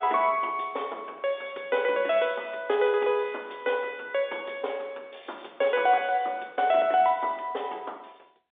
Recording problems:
phone line; 320 Hz to 3.6 kHz, G.711

